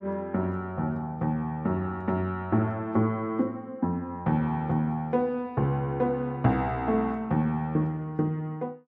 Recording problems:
none

